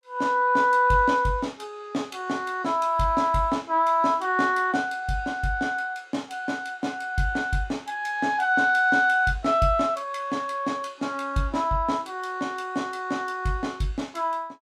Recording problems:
none

